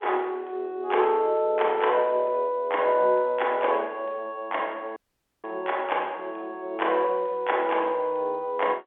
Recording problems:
telephone audio; 260 Hz to 3.5 kHz, G.711
dropout; at 5 s

